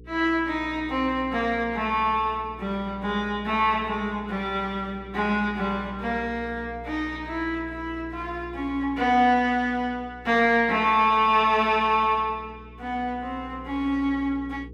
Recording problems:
hum; 60 Hz, harmonics up to 480 Hz, SNR 19 dB

